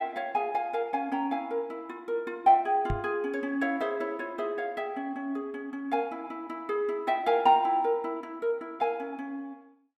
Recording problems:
microphone bump; at 3 s; peak +1 dB vs average level

